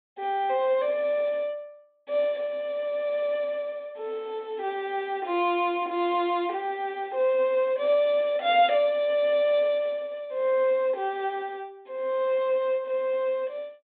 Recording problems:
low-pass filter; nothing above 4 kHz

